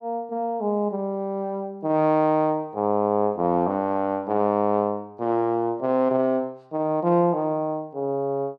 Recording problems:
none

